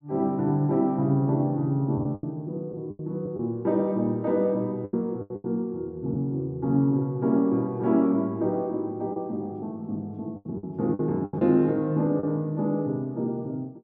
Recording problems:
lost packets; 6% of the sound replaced, filled with the last packet

